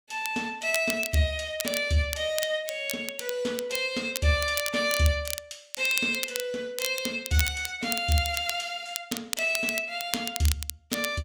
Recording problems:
crackle; vinyl, SNR 7 dB

